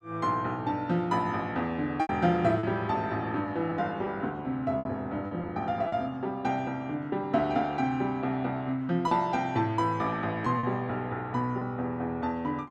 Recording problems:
lost packets; 4% of the sound replaced, filled with repeated pitch periods

